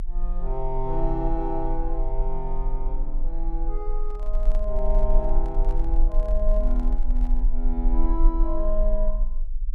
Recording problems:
rumble; below 36 Hz, strongest tone 20 Hz, SNR -5 dB
handling noise; from 4 to 7.5 s; peak -9 dB vs average level

